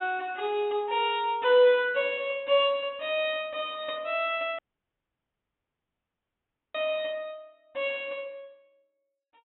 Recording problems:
treble missing; nothing above 3.6 kHz
dropout; at 4.5 s for 2 s

